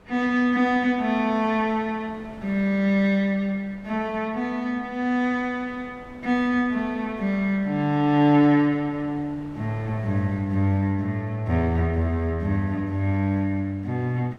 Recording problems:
wind on the microphone; below 820 Hz, SNR 24 dB

